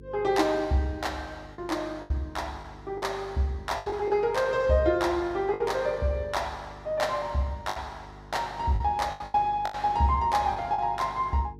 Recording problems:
hum; 50 Hz, harmonics up to 450 Hz, SNR 20 dB
lost packets; 7% of the sound replaced, filled with the last packet

